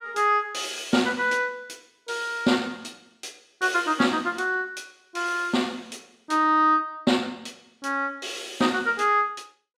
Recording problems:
none

